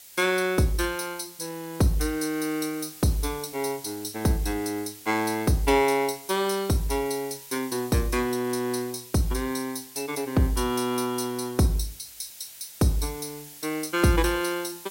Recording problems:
hiss; SNR 16 dB

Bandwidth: 16 kHz